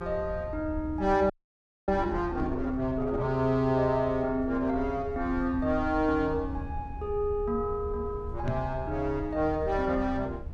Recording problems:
rumble; below 86 Hz, SNR 11 dB
frozen audio; at 1.5 s for 0.5 s
microphone bump; at 2.5 s and at 8.5 s; peak +1 dB vs average level

